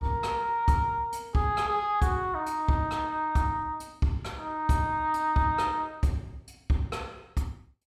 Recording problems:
none

